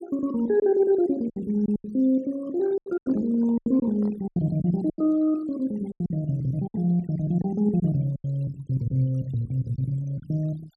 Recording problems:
denoising artefacts; signal-to-artefact ratio 26 dB
lost packets; 9% of the sound replaced, filled with silence
microphone handling noise; from 2.5 to 4.5 s; peak -12 dB vs average level

